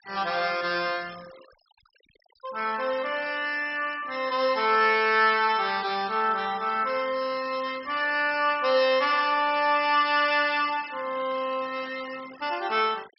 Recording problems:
treble missing; nothing above 5.5 kHz
noise reduction artefacts; signal-to-artefact ratio 21 dB

